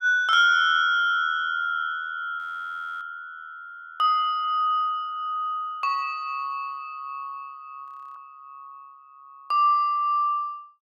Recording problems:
frozen audio; at 2.5 s for 0.5 s and at 8 s

